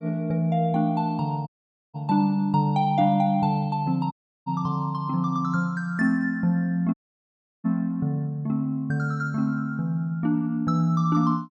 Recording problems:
audio cutting out; at 1.5 s, at 4 s and at 7 s for 0.5 s

